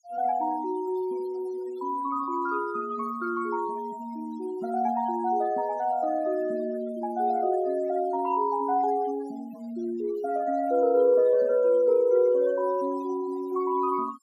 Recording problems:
noise reduction artefacts; signal-to-artefact ratio 22 dB

